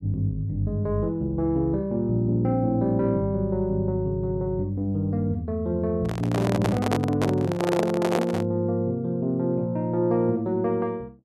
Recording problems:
handling noise; from 6 to 8.5 s; peak +3 dB vs average level

